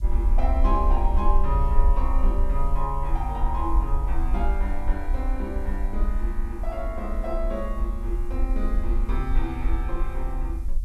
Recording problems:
hiss; slope +6 dB per octave, SNR 27 dB
rumble; below 48 Hz, SNR -4 dB

